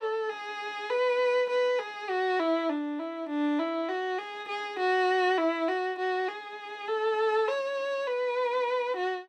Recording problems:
none

